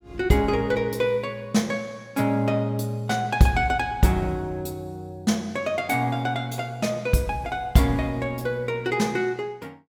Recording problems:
none

